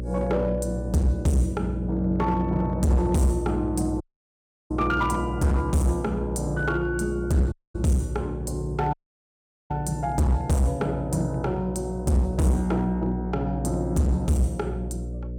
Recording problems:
distortion; hard clipping, uneven, signal-to-distortion ratio 7 dB
hum; 60 Hz, harmonics up to 600 Hz, SNR 7 dB
audio cutting out; at 4 s for 0.5 s, at 7.5 s and at 9 s for 1 s

